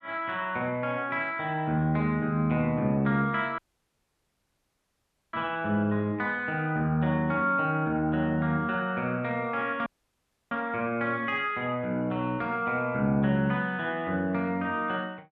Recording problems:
dropout; at 3.5 s for 2 s and at 10 s for 0.5 s

